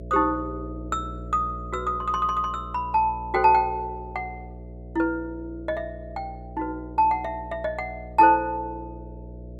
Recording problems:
hum; 60 Hz, harmonics up to 660 Hz, SNR 14 dB

